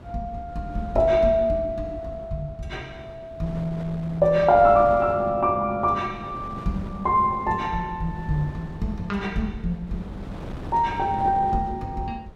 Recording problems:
wind noise; below 410 Hz, SNR 16 dB

